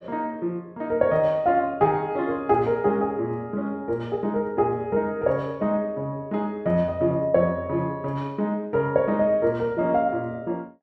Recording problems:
none

